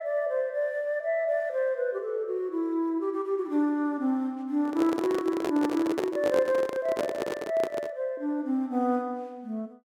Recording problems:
handling noise; from 4.5 to 8 s; peak +2 dB vs average level

